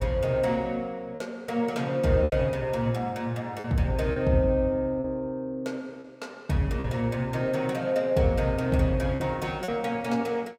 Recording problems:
lost packets; 4% of the sound replaced, filled with repeated pitch periods

